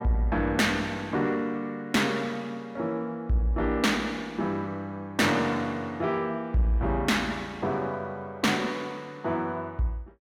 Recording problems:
distorted audio; soft clipping, signal-to-distortion ratio 12 dB

